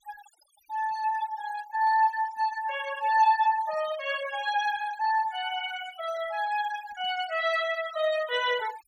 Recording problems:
denoising artefacts; signal-to-artefact ratio 16 dB

